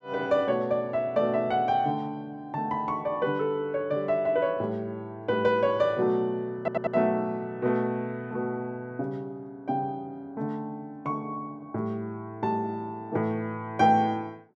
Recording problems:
stutter; at 6.5 s

